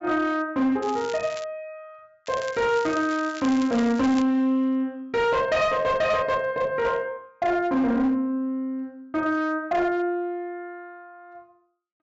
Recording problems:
low-pass filter; nothing above 8 kHz
distortion; hard clipping, signal-to-distortion ratio 12 dB
crackle; at 1 s and from 2.5 to 4 s; loose cable, SNR 17 dB

